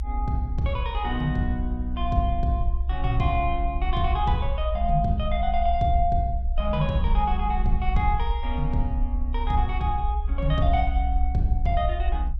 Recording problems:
rumble; below 62 Hz, SNR 1 dB

